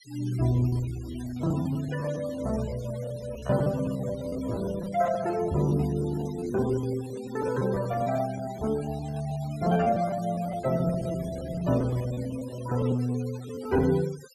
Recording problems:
denoising artefacts; signal-to-artefact ratio 18 dB
packet loss; 17% of the sound replaced, filled with repeated pitch periods

